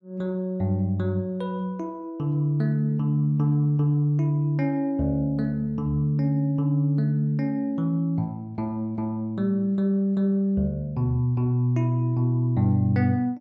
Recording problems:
none

